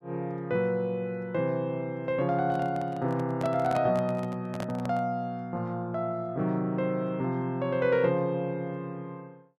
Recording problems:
microphone handling noise; from 2.5 to 5 s; peak -4 dB vs average level

